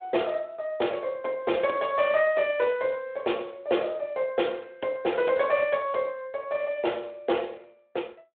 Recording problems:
telephone audio; 280 Hz to 3.7 kHz, Speex

